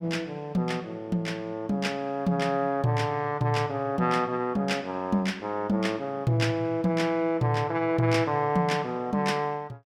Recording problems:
none

